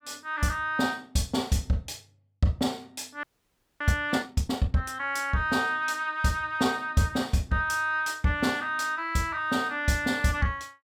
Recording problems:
frozen audio; at 3 s for 0.5 s

